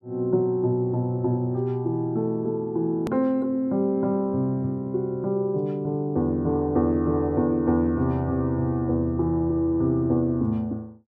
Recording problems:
edit click; at 3 s

